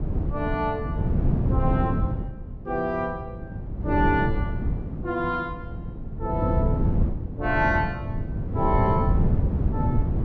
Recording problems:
wind on the microphone; below 170 Hz, SNR -1 dB

